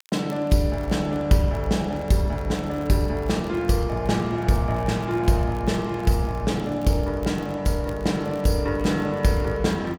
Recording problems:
crackling; vinyl, SNR 28 dB

